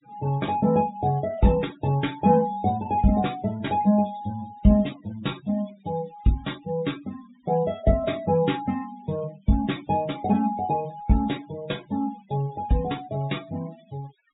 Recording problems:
low-pass filter; nothing above 4 kHz
denoising artefacts; signal-to-artefact ratio 21 dB

